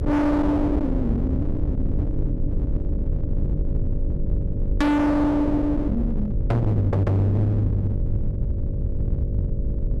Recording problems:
distortion; hard clipping, signal-to-distortion ratio 6 dB
hum; 50 Hz, harmonics up to 600 Hz, SNR 12 dB
rumble; below 130 Hz, SNR 4 dB

